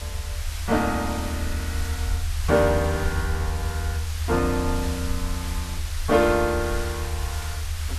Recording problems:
hiss; slope +1 dB per octave, SNR 10 dB
low-frequency rumble; below 80 Hz, SNR 4 dB

